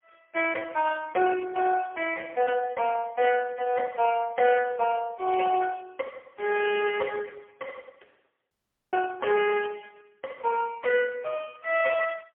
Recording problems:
phone line; 340 Hz to 3.2 kHz, AMR-NB, then MP3
dropout; at 8.5 s

